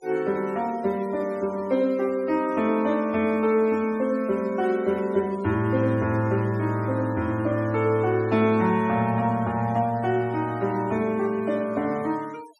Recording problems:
denoising artefacts; signal-to-artefact ratio 24 dB

